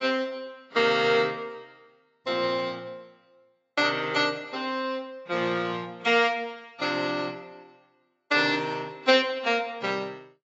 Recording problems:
lossy compression; AAC, log-spectral distance 2 dB, nothing above 7.3 kHz

